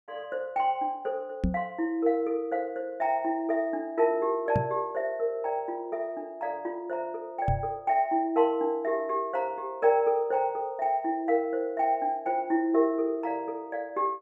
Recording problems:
knock on the microphone; at 1.5 s, at 4.5 s and at 7.5 s; peak +5 dB vs average level

